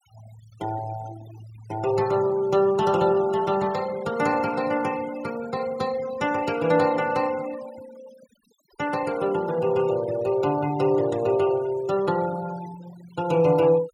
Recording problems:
denoising artefacts; signal-to-artefact ratio 20 dB

